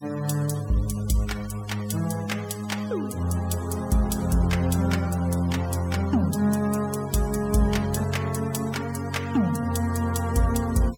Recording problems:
noise reduction artefacts; signal-to-artefact ratio 18 dB

